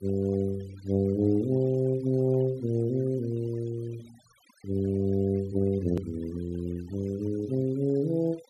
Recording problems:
denoising artefacts; signal-to-artefact ratio 25 dB
edit click; at 6 s

